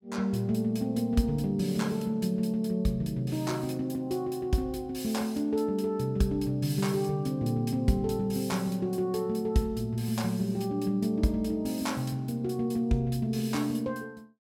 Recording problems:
none

